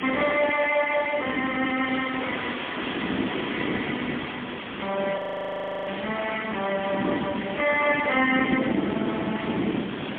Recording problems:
telephone audio; 220 Hz to 3.1 kHz, AMR-NB, then MP3
hiss; SNR 8 dB
wind noise; below 390 Hz, SNR 5 dB
audio freezing; at 5 s for 0.5 s

